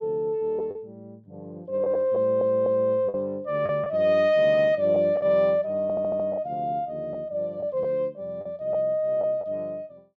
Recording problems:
lost packets; 4% of the sound replaced, filled with the last packet
stutter; at 2 s and at 6 s

